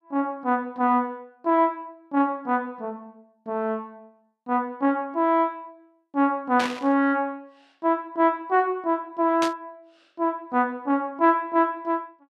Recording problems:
burst of static; at 6.5 s and at 9.5 s; peak -1 dB vs average level

